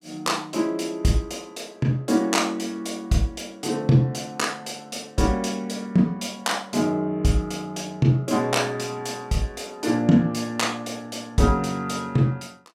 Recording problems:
none

